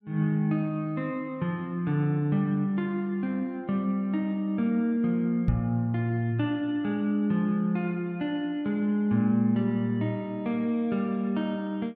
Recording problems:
microphone thump; at 5.5 s; peak +4 dB vs average level

